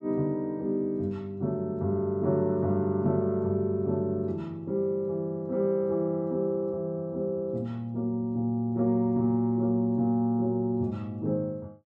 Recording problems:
none

